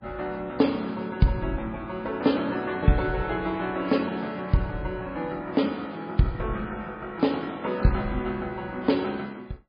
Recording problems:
codec artefacts; MP3, log-spectral distance 3 dB, nothing above 11 kHz

